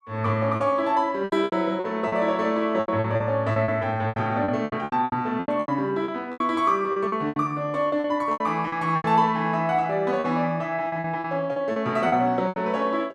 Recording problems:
lost packets; 15% of the sound replaced, filled with repeated pitch periods

